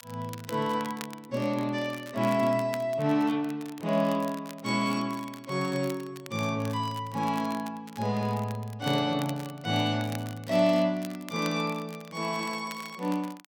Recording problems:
crackling; vinyl, SNR 18 dB

